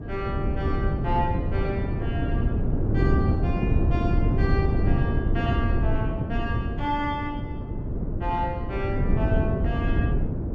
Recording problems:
wind noise; below 200 Hz, SNR -6 dB

